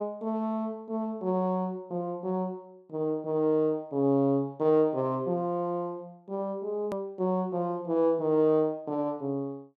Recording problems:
hard cut with a click; at 7 s

